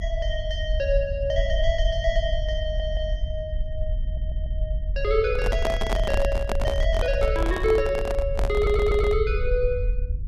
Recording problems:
rumble; below 62 Hz, SNR 2 dB
stutter; at 2.5 s, at 4 s and at 8.5 s
handling noise; from 5.5 to 9 s; peak +3 dB vs average level

